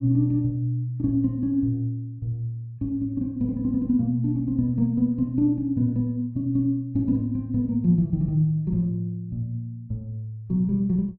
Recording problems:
none

